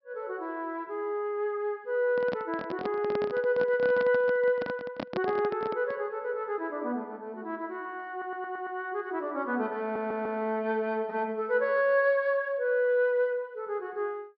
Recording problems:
low-pass filter; nothing above 5.5 kHz
handling noise; from 2 to 6 s; peak -1 dB vs average level
audio stuttering; at 8 s and at 10 s

